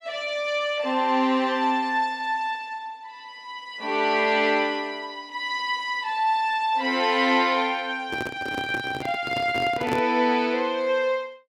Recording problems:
handling noise; from 8 to 10 s; peak -1 dB vs average level

